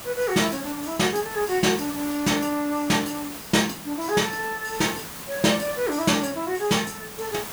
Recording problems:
hiss; slope -3 dB per octave, SNR 11 dB

